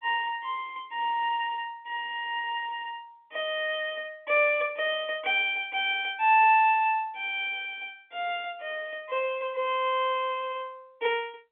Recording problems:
phone line; 240 Hz to 3.5 kHz, G.711

